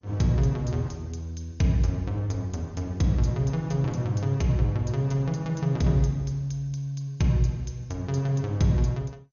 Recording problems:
lossy codec; MP2, log-spectral distance 3 dB, nothing above 6.7 kHz

